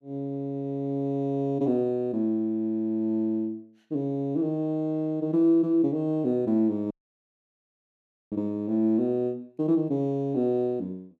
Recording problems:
dropout; at 7 s for 1.5 s

